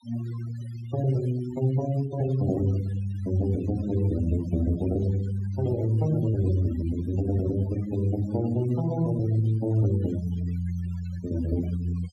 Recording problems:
denoising artefacts; signal-to-artefact ratio 17 dB

